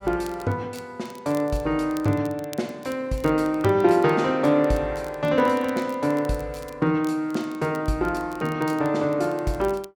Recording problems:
crackling; vinyl, SNR 25 dB

